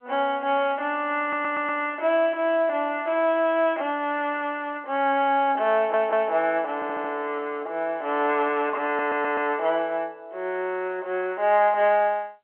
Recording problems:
telephone audio; 300 Hz to 3.2 kHz, G.711
audio stuttering; 4 times, first at 1 s
static burst; at 3 s; peak -16 dB vs average level

